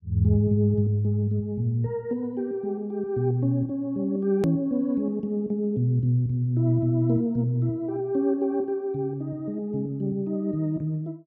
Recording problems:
click at an edit; at 4.5 s

